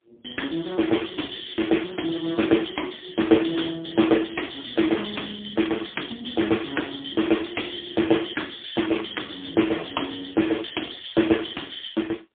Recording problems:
phone line; 240 Hz to 3.6 kHz, AMR-NB, then MP3

